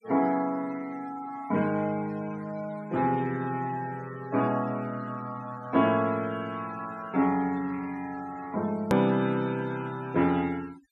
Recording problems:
denoising artefacts; signal-to-artefact ratio 20 dB
click at an edit; at 9 s

